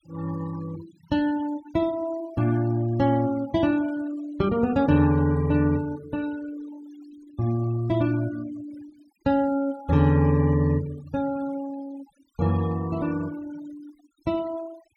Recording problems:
noise reduction artefacts; signal-to-artefact ratio 22 dB

